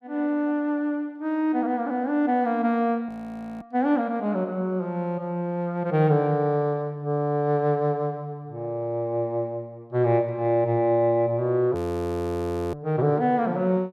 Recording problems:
audio freezing; at 3 s for 0.5 s and at 12 s for 1 s

